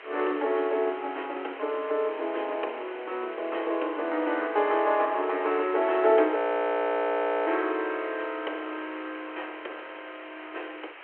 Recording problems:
phone line; 280 Hz to 3.3 kHz, G.726
hiss; SNR 16 dB
audio freezing; at 6.5 s for 1 s

